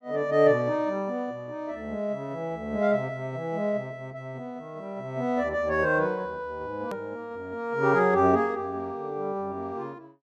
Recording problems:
edit click; at 7 s

